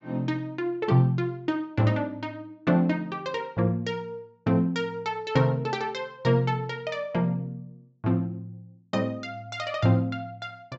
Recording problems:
treble missing; nothing above 7.6 kHz

